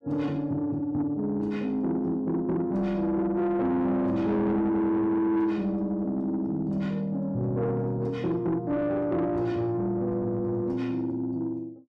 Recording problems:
distortion; soft clipping, signal-to-distortion ratio 11 dB

